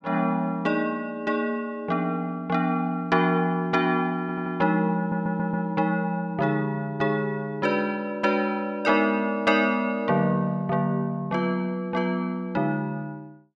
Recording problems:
audio stuttering; at 4 s and at 5 s

